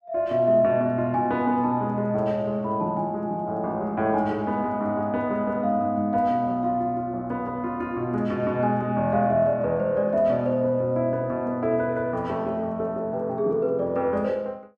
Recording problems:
none

